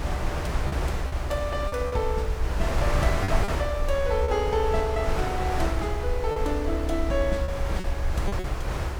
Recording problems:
hiss; slope 0 dB per octave, SNR 24 dB
rumble; below 72 Hz, SNR 3 dB
wind on the microphone; below 1 kHz, SNR 3 dB
packet loss; 6% of the sound replaced, filled with repeated pitch periods

